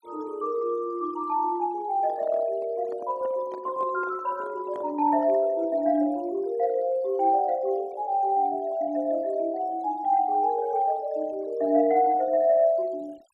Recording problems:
denoising artefacts; signal-to-artefact ratio 26 dB
microphone handling noise; from 2 to 5.5 s; peak -13 dB vs average level

